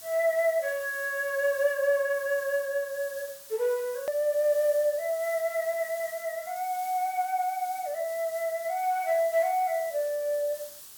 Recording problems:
hiss; SNR 15 dB
hard cut with a click; at 4 s

